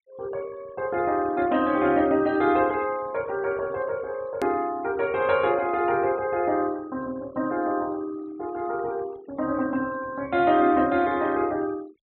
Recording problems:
treble cut off; nothing above 4.1 kHz
denoising artefacts; signal-to-artefact ratio 24 dB
edit click; at 4.5 s

